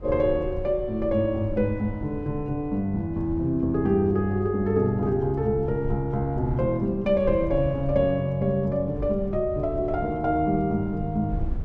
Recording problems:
low-frequency rumble; below 98 Hz, SNR 13 dB

